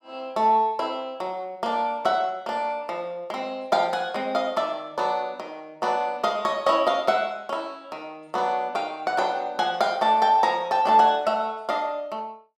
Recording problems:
none

